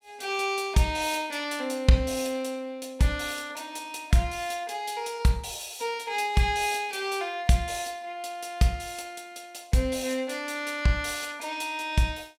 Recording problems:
none

